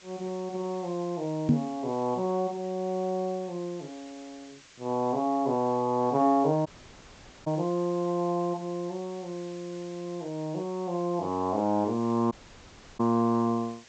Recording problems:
treble cut off; nothing above 8 kHz
hiss; slope 0 dB per octave, SNR 23 dB
microphone thump; at 1.5 s; peak +10 dB vs average level
audio cutting out; at 6.5 s for 1 s and at 12 s for 0.5 s

